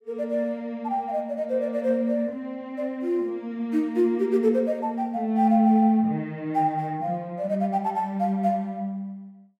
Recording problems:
none

